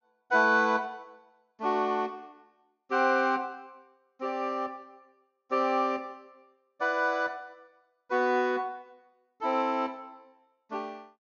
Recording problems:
low-pass filter; nothing above 6.8 kHz

